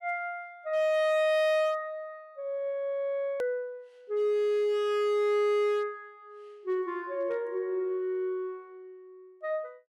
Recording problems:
distortion; hard clipping, signal-to-distortion ratio 11 dB
click at an edit; at 3.5 s

